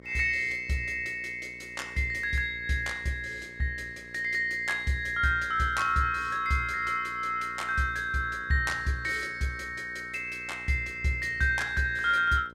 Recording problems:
electrical hum; 60 Hz, harmonics up to 1.6 kHz, SNR 23 dB

